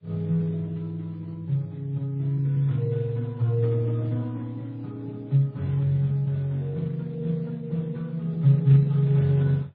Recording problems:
lossy compression; Speex, then MP3, log-spectral distance 2 dB, nothing above 11.3 kHz

